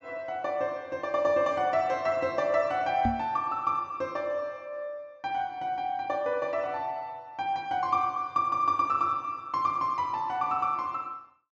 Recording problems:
low-pass filter; nothing above 8 kHz
microphone bump; at 3 s; peak +3 dB vs average level

